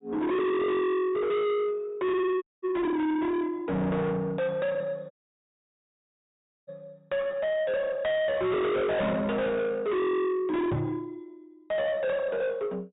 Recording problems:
treble missing; nothing above 4 kHz
distorted audio; soft clipping, signal-to-distortion ratio 6 dB
dropout; at 2.5 s and at 5 s for 1.5 s
knock on the microphone; at 11 s; peak +4 dB vs average level

